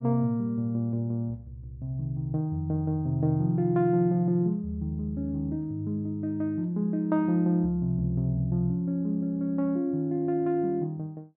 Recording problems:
low-pass filter; nothing above 5.5 kHz

